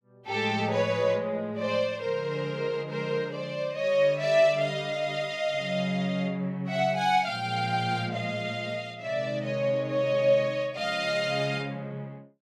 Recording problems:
none

